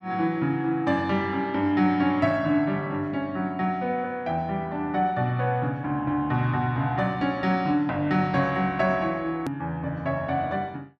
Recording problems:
hard cut with a click; at 9.5 s

